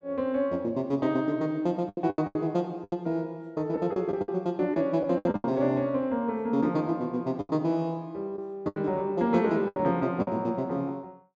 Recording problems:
treble missing; nothing above 8 kHz
packet loss; 9% of the sound replaced, filled with the last packet

